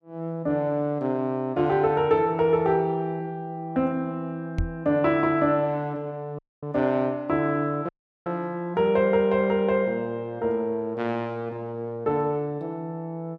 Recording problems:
microphone bump; at 4.5 s; peak +1 dB vs average level
audio cutting out; at 6.5 s and at 8 s

